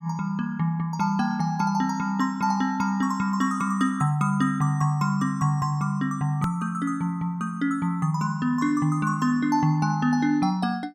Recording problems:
edit click; at 6.5 s

